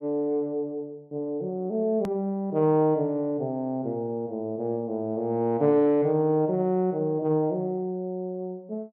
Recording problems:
click at an edit; at 2 s

